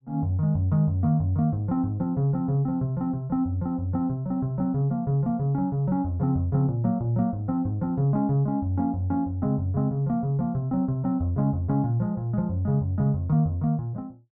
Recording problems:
none

